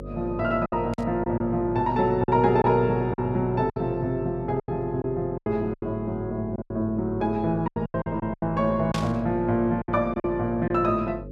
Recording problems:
hum; 50 Hz, harmonics up to 550 Hz, SNR 14 dB
lost packets; 10% of the sound replaced, filled with silence
static burst; at 1 s and at 9 s; peak -3 dB vs average level

